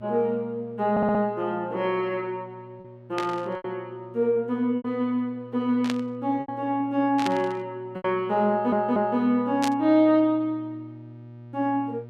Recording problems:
electrical hum; 60 Hz, harmonics up to 960 Hz, SNR 21 dB
lost packets; 3% of the sound replaced, filled with repeated pitch periods
audio stuttering; at 1 s and at 8.5 s
static burst; 4 times, first at 3 s; peak -1 dB vs average level

